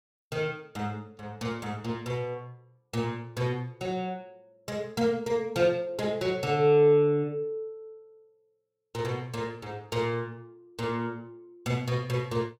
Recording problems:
none

